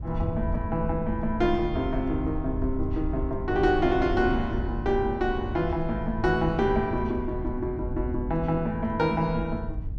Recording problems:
wind on the microphone; below 88 Hz, SNR 7 dB

